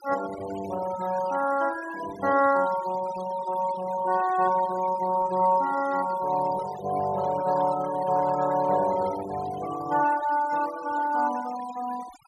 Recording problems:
denoising artefacts; signal-to-artefact ratio 15 dB

